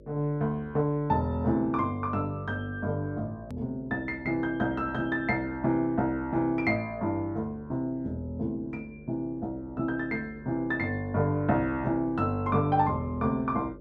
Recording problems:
hum; 50 Hz, harmonics up to 600 Hz, SNR 21 dB
click at an edit; at 3.5 s

